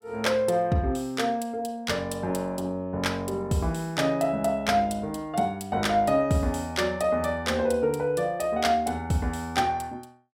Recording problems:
none

